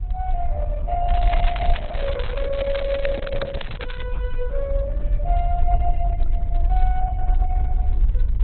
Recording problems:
codec artefacts; Opus, log-spectral distance 3 dB, nothing above 4 kHz
rumble; below 52 Hz, SNR -6 dB
crackle; from 1 to 4 s; loose cable, SNR 6 dB

